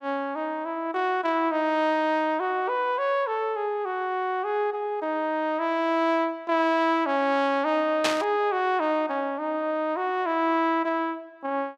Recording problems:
burst of static; at 8 s; peak +4 dB vs average level

